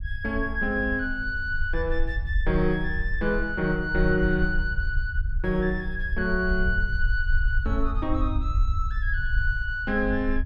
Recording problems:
low-frequency rumble; below 60 Hz, SNR 3 dB

